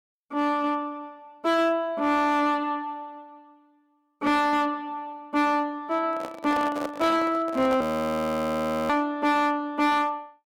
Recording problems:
distortion; hard clipping, uneven, signal-to-distortion ratio 10 dB
handling noise; from 6 to 8 s; peak -3 dB vs average level
audio freezing; at 8 s for 1 s

